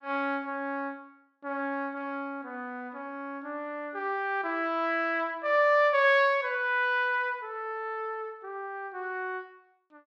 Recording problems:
none

